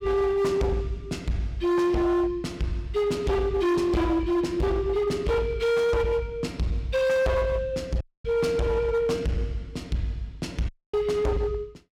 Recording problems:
distortion; hard clipping, uneven, signal-to-distortion ratio 8 dB
audio cutting out; at 8 s and at 11 s

